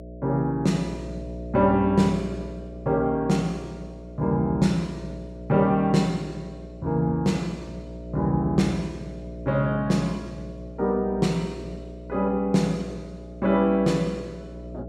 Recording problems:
electrical hum; 60 Hz, harmonics up to 660 Hz, SNR 14 dB

